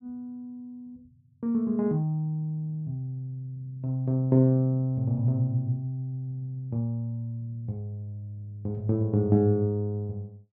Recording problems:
none

